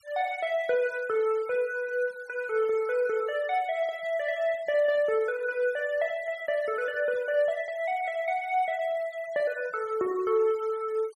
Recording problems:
noise reduction artefacts; signal-to-artefact ratio 25 dB

